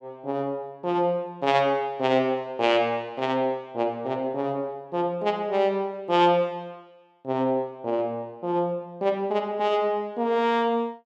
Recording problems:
none

